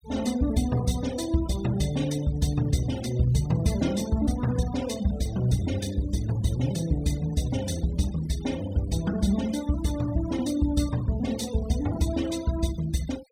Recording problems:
noise reduction artefacts; signal-to-artefact ratio 17 dB

